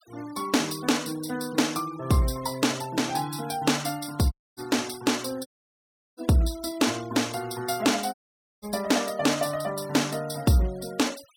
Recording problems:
noise reduction artefacts; signal-to-artefact ratio 19 dB
dropout; at 4.5 s, at 5.5 s for 0.5 s and at 8 s

